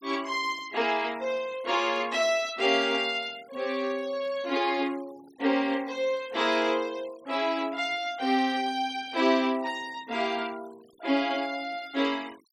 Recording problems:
noise reduction artefacts; signal-to-artefact ratio 23 dB

